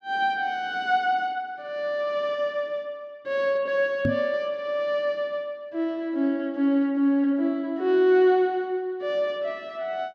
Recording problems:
knock on the microphone; at 4 s; peak +3 dB vs average level

